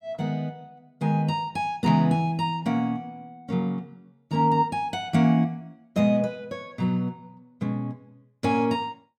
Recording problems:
none

